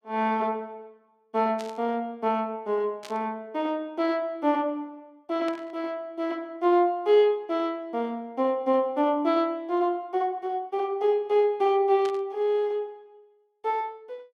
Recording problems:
burst of static; 4 times, first at 1.5 s; peak -10 dB vs average level

